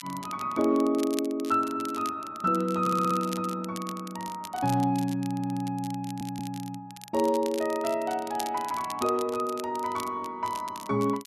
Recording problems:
crackling; vinyl, SNR 15 dB
audio stuttering; at 3 s, at 5.5 s and at 6 s

